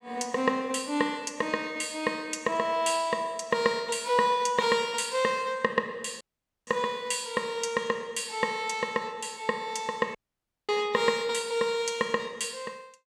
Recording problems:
audio cutting out; at 6 s and at 10 s for 0.5 s

